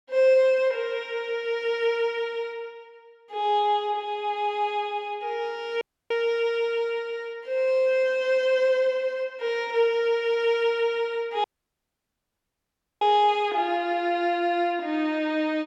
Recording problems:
dropout; at 6 s and at 11 s for 1.5 s

